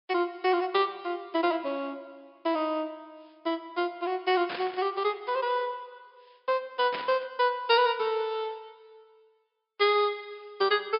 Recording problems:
treble missing; nothing above 5.5 kHz
burst of static; at 4.5 s and at 7 s; peak -3 dB vs average level

